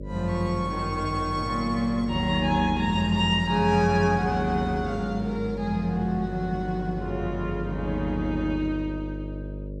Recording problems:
hum; 50 Hz, harmonics up to 600 Hz, SNR 10 dB

